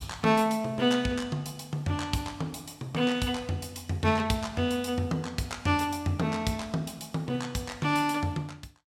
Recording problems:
none

